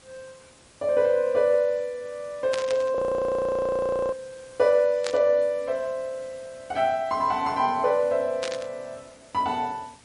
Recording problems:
lossy codec; MP3, log-spectral distance 4 dB, nothing above 10.4 kHz
hiss; slope -2 dB per octave, SNR 26 dB
static burst; at 2.5 s, at 5 s and at 8.5 s; peak -2 dB vs average level
audio freezing; at 3 s for 1 s

